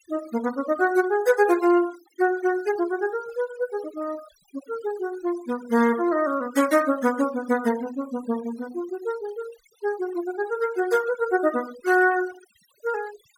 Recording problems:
noise reduction artefacts; signal-to-artefact ratio 18 dB

